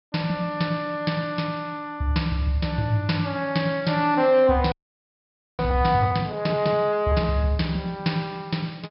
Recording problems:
low-pass filter; nothing above 5.4 kHz
frozen audio; at 4.5 s for 1 s

